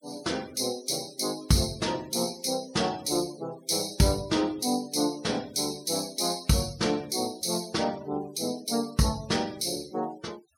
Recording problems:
denoising artefacts; signal-to-artefact ratio 19 dB

